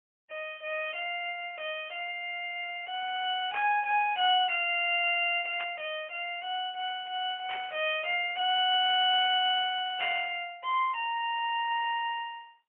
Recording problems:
phone line; 300 Hz to 3.3 kHz, AMR-NB, then MP3
burst of static; 4 times, first at 3.5 s; peak -5 dB vs average level

